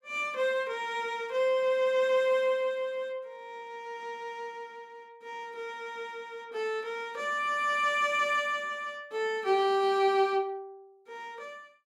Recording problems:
none

